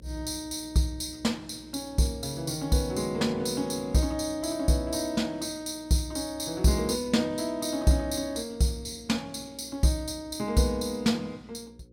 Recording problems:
electrical hum; 60 Hz, harmonics up to 540 Hz, SNR 25 dB

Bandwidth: 16.5 kHz